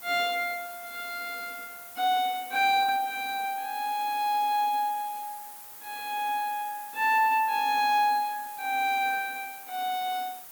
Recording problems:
background hiss; SNR 14 dB

